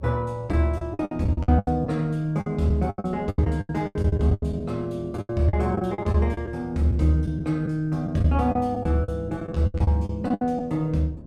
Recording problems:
hum; 60 Hz, harmonics up to 660 Hz, SNR 30 dB
wind on the microphone; below 280 Hz, SNR 21 dB
packet loss; 16% of the sound replaced, filled with the last packet

